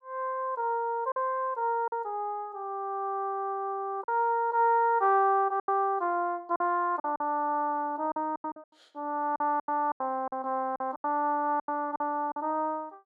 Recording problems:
lost packets; 8% of the sound replaced, filled with silence

